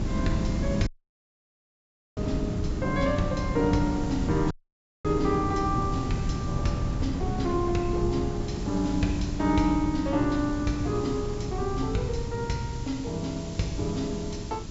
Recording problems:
treble missing; nothing above 8 kHz
background hiss; SNR 18 dB
wind noise; below 210 Hz, SNR 4 dB
dropout; at 1 s for 1.5 s and at 4.5 s for 0.5 s

